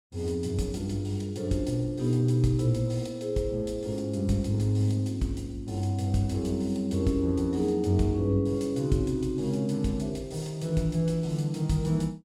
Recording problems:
none

